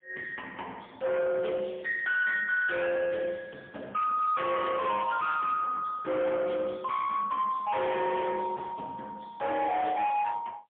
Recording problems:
phone line; 560 Hz to 3.3 kHz, AMR-NB, then MP3
distorted audio; hard clipping, signal-to-distortion ratio 8 dB
crackling; at 1.5 s; loose cable, SNR 27 dB

